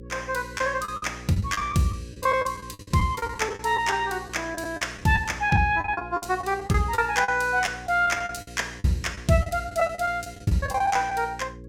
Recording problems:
hum; 60 Hz, harmonics up to 540 Hz, SNR 18 dB
packet loss; 14% of the sound replaced, filled with the last packet

